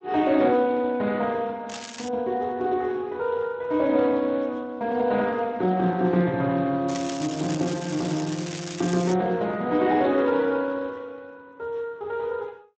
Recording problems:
lossy compression; Speex, log-spectral distance 5 dB
crackle; at 1.5 s and from 7 to 9 s; loose cable, SNR 13 dB

